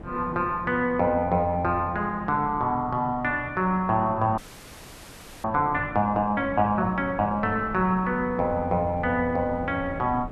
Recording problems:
wind noise; below 330 Hz, SNR 17 dB
frozen audio; at 4.5 s for 1 s

